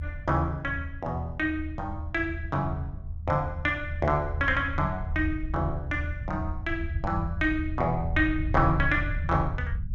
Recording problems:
low-frequency rumble; below 82 Hz, SNR 6 dB

